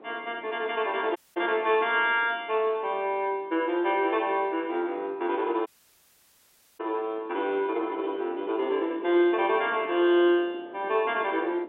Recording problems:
telephone audio; 280 Hz to 3.6 kHz, G.711
wind noise; below 550 Hz, SNR 20 dB
dropout; at 1 s and at 5.5 s for 1 s

